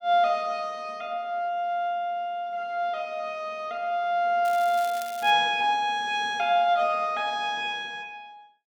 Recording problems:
crackle; at 4.5 s; loose cable, SNR 17 dB

